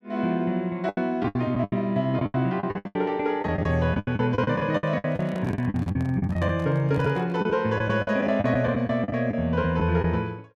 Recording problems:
lost packets; 15% of the sound replaced, filled with the last packet
microphone handling noise; from 5 to 7.5 s; peak -12 dB vs average level

